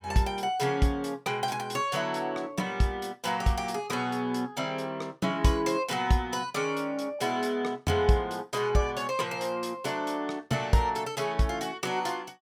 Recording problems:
none

